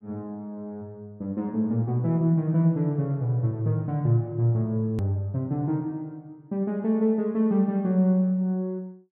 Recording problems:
click at an edit; at 5 s

